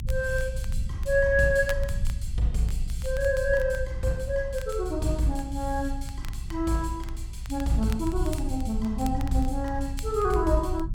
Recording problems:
rumble; below 70 Hz, strongest tone 28 Hz, SNR 6 dB
crackling; vinyl, SNR 21 dB

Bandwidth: 17 kHz